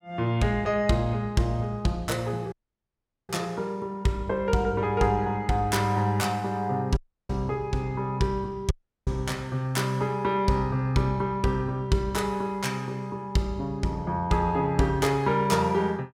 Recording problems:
dropout; at 2.5 s for 1 s, at 7 s and at 8.5 s

